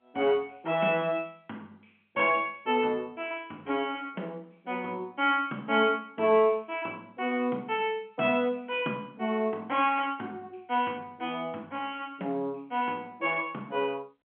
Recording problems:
phone line; 190 Hz to 3.3 kHz, G.711

